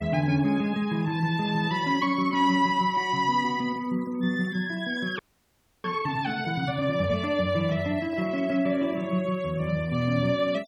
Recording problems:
denoising artefacts; signal-to-artefact ratio 25 dB
frozen audio; at 5 s for 0.5 s
handling noise; from 6.5 to 8.5 s; peak -12 dB vs average level

